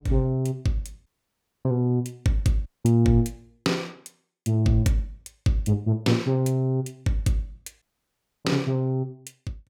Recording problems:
audio cutting out; at 1 s for 0.5 s, at 2.5 s and at 8 s for 0.5 s

